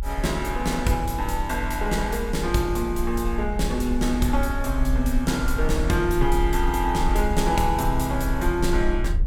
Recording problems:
rumble; below 54 Hz, SNR 5 dB

